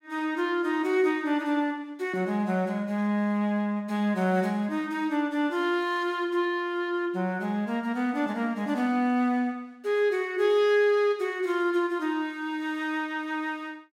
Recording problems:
none

